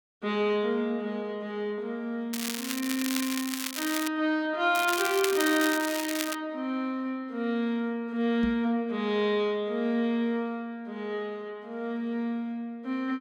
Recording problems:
crackle; from 2.5 to 4 s and from 5 to 6.5 s; loose cable, SNR 4 dB
microphone thump; at 8.5 s; peak 0 dB vs average level

